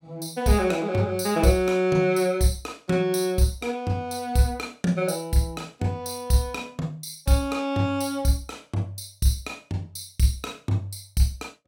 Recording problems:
none

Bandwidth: 16.5 kHz